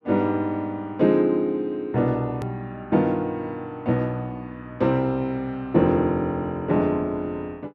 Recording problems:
edit click; at 2.5 s

